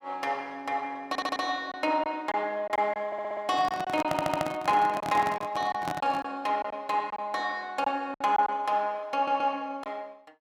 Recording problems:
packet loss; 6% of the sound replaced, filled with silence
stutter; 4 times, first at 1 s
handling noise; from 3.5 to 6.5 s; peak +2 dB vs average level

